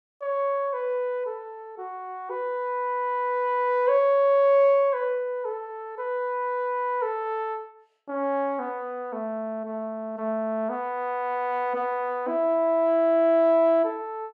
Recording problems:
none

